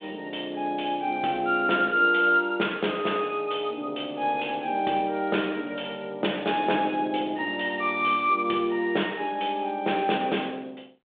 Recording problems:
phone line; 240 Hz to 3.7 kHz, G.726

